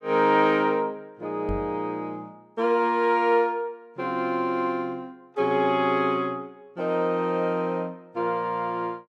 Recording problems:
microphone thump; at 1.5 s; peak -3 dB vs average level

